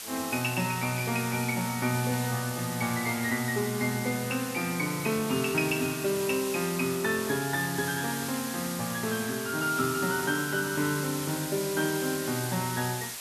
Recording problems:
hiss; slope +2 dB per octave, SNR 6 dB

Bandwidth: 13.5 kHz